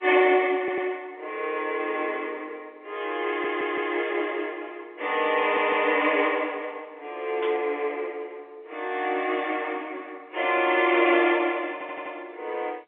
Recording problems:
telephone audio; 300 Hz to 3.8 kHz, G.711
stutter; 4 times, first at 0.5 s
burst of static; at 7.5 s; peak -8 dB vs average level

